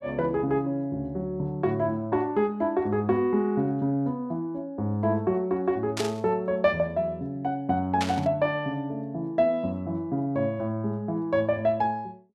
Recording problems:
burst of static; at 6 s and at 8 s; peak 0 dB vs average level

